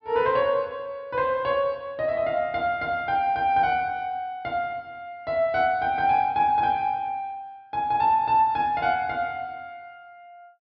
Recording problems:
treble missing; nothing above 5.5 kHz

